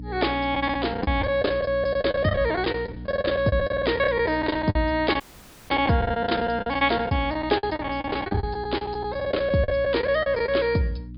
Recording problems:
low-pass filter; nothing above 5.1 kHz
hum; 60 Hz, harmonics up to 300 Hz, SNR 14 dB
packet loss; 16% of the sound replaced, filled with the last packet
dropout; at 5 s for 0.5 s

